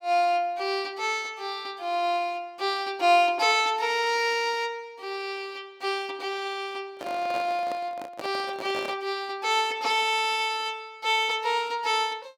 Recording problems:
microphone handling noise; from 7 to 9 s; peak -7 dB vs average level

